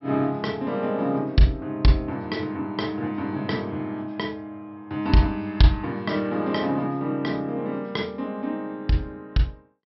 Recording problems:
treble cut off; nothing above 5.5 kHz

